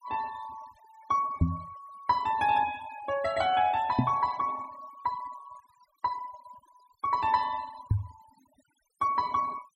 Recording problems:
noise reduction artefacts; signal-to-artefact ratio 20 dB
microphone bump; at 1.5 s, at 4 s and at 8 s; peak +8 dB vs average level

